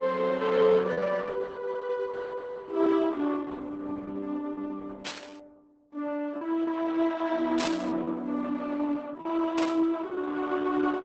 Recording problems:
lossy codec; Opus, log-spectral distance 3 dB, nothing above 7.6 kHz
lost packets; 9% of the sound replaced, filled with repeated pitch periods
burst of static; at 5 s, at 7.5 s and at 9.5 s; peak -3 dB vs average level

